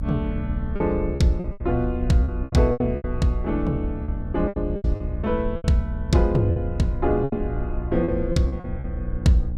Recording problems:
hum; 60 Hz, harmonics up to 600 Hz, SNR 10 dB
rumble; below 76 Hz, SNR 7 dB
lost packets; 12% of the sound replaced, filled with repeated pitch periods

